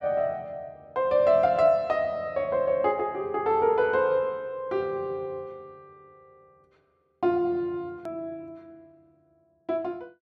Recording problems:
edit click; at 8 s

